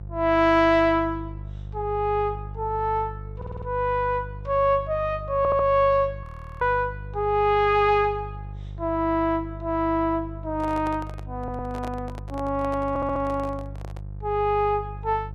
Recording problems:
hum; 50 Hz, harmonics up to 500 Hz, SNR 13 dB
audio stuttering; 4 times, first at 3.5 s
frozen audio; at 6 s
microphone handling noise; from 10 to 14 s; peak -10 dB vs average level

